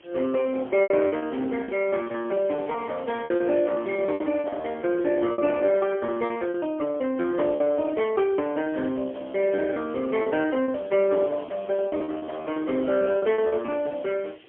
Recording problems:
telephone audio; 260 Hz to 3.3 kHz, AMR-NB, then MP3
hiss; SNR 28 dB
wind noise; below 640 Hz, SNR 20 dB
lost packets; 13% of the sound replaced, filled with repeated pitch periods

